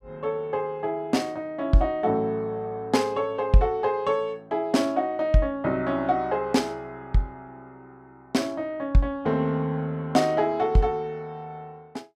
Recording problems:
none

